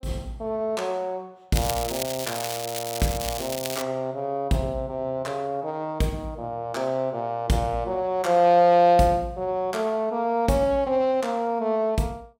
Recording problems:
crackling; from 1.5 to 4 s; loose cable, SNR 7 dB

